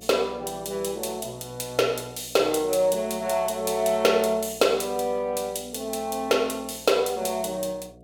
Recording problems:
hum; 60 Hz, harmonics up to 720 Hz, SNR 24 dB

